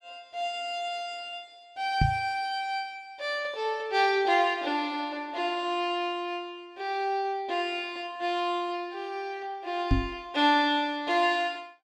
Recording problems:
microphone thump; at 2 s and at 10 s; peak +8 dB vs average level

